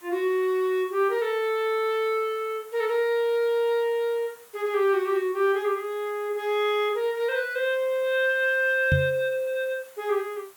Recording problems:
background hiss; SNR 25 dB
microphone bump; at 9 s; peak +5 dB vs average level

